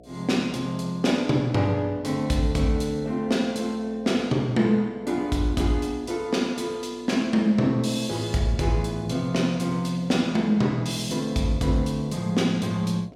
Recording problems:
hum; 60 Hz, harmonics up to 720 Hz, SNR 24 dB

